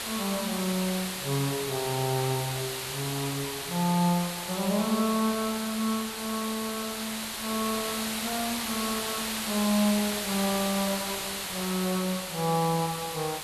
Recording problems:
background hiss; SNR 2 dB

